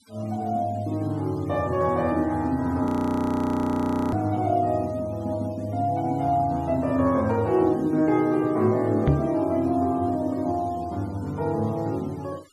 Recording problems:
denoising artefacts; signal-to-artefact ratio 27 dB
frozen audio; at 3 s for 1.5 s
microphone thump; at 9 s; peak +7 dB vs average level

